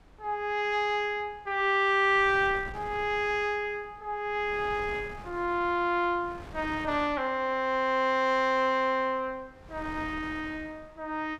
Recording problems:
wind on the microphone; below 820 Hz, SNR 20 dB

